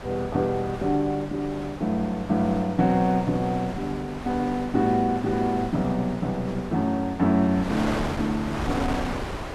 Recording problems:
wind on the microphone; below 1.2 kHz, SNR 9 dB

